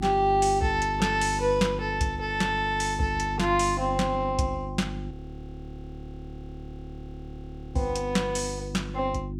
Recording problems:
hum; 50 Hz, harmonics up to 350 Hz, SNR 9 dB
frozen audio; at 5 s for 2.5 s

